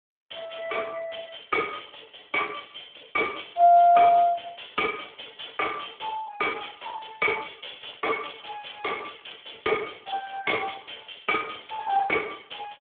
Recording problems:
telephone audio; 320 Hz to 3.4 kHz, Speex

